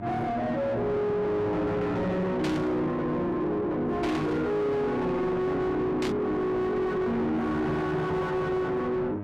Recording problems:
distorted audio; soft clipping, signal-to-distortion ratio 7 dB
hum; 50 Hz, harmonics up to 1.6 kHz, SNR 17 dB
burst of static; at 2.5 s, at 4 s and at 6 s; peak -4 dB vs average level

